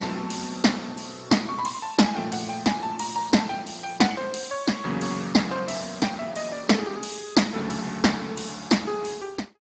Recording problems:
lossy codec; Speex, log-spectral distance 8 dB, nothing above 7.6 kHz

